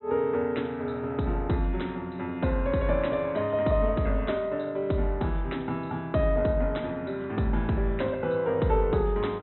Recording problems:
treble cut off; nothing above 3.9 kHz

